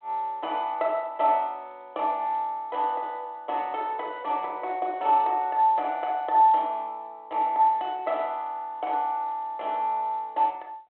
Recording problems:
phone line; 240 Hz to 3.9 kHz, G.726

